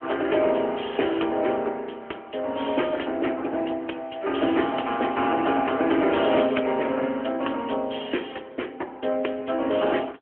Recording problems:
phone line; 260 Hz to 3.2 kHz, AMR-NB

